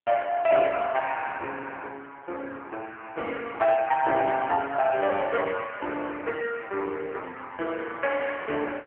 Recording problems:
phone line; 300 Hz to 3.1 kHz, AMR-NB

